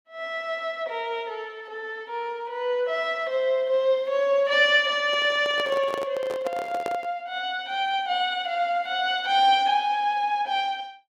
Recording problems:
handling noise; from 5 to 7 s; peak -3 dB vs average level

